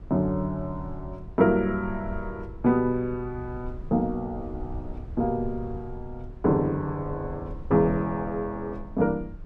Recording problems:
rumble; below 92 Hz, SNR 14 dB

